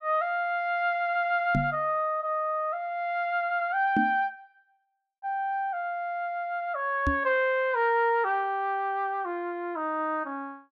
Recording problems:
microphone bump; at 1.5 s, at 4 s and at 7 s; peak +4 dB vs average level

